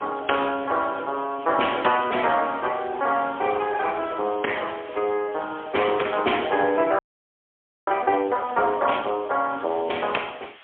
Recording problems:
telephone audio; 300 Hz to 3.4 kHz, AMR-NB, then MP3
hiss; SNR 21 dB
audio freezing; at 7 s for 1 s

